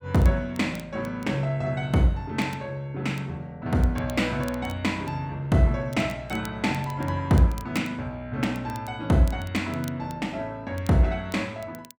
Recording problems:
crackling; vinyl, SNR 23 dB

